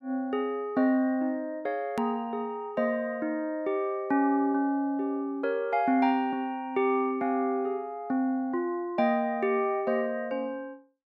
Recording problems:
edit click; at 2 s

